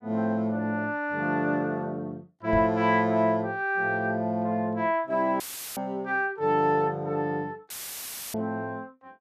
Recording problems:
knock on the microphone; at 2.5 s; peak -3 dB vs average level
dropout; at 5.5 s and at 7.5 s for 0.5 s; filled with static

